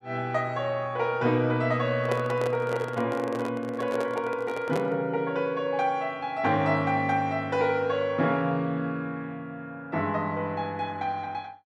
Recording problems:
microphone handling noise; from 2 to 5 s; peak +1 dB vs average level

